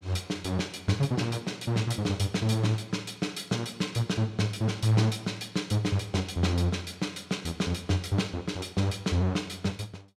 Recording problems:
none

